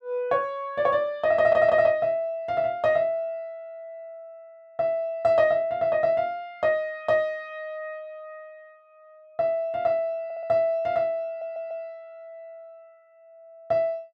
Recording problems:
stutter; at 1.5 s, at 10 s and at 11 s

